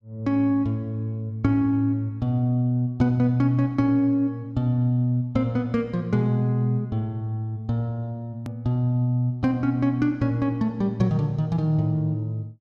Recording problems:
edit click; at 8.5 s

